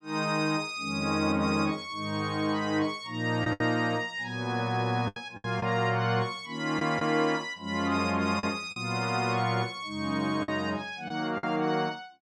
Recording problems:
lost packets; 4% of the sound replaced, filled with the last packet

